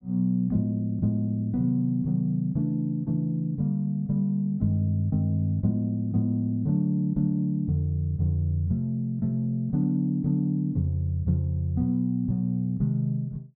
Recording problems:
treble cut off; nothing above 5.5 kHz

